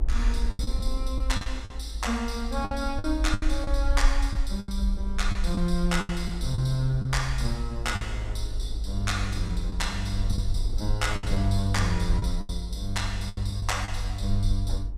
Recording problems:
low-frequency rumble; below 54 Hz, SNR 1 dB
wind on the microphone; below 390 Hz, SNR 18 dB
packet loss; 8% of the sound replaced, filled with the last packet

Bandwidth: 15 kHz